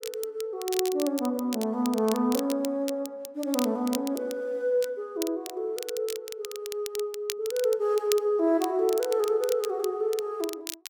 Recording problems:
crackling; vinyl, SNR 11 dB

